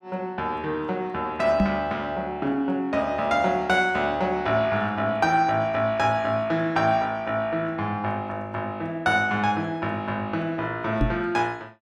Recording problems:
microphone bump; at 1.5 s and at 11 s; peak +5 dB vs average level

